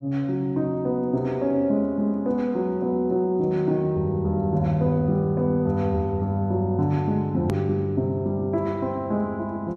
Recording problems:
click at an edit; at 7.5 s

